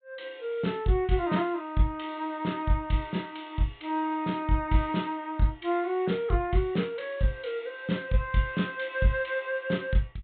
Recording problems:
low-pass filter; nothing above 4 kHz

